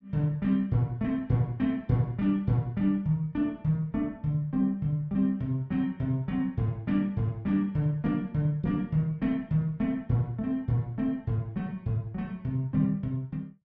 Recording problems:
none

